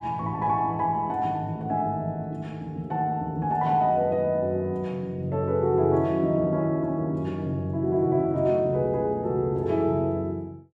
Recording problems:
none

